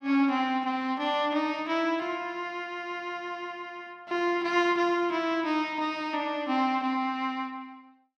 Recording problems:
none

